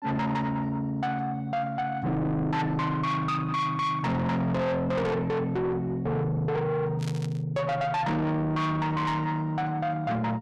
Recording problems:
distorted audio; soft clipping, signal-to-distortion ratio 7 dB
burst of static; at 7 s; peak -9 dB vs average level

